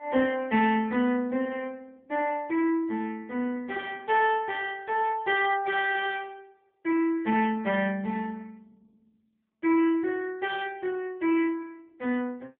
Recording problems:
phone line; 170 Hz to 3.5 kHz, AMR-NB

